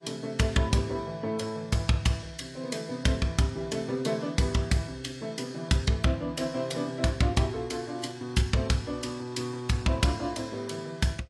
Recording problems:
lossy codec; AAC, log-spectral distance 3 dB, nothing above 11.3 kHz

